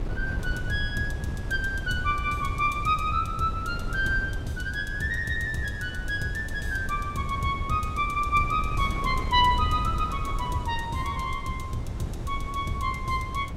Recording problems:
wind on the microphone; below 130 Hz, SNR 7 dB

